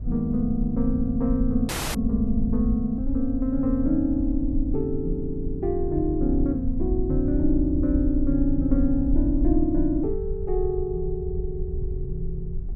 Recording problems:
low-frequency rumble; below 56 Hz, SNR 6 dB
dropout; at 1.5 s

